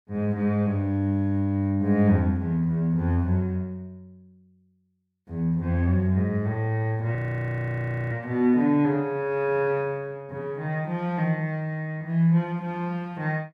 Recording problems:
frozen audio; at 7 s for 1 s

